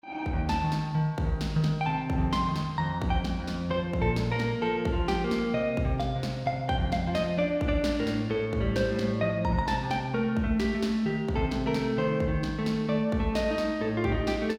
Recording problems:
none

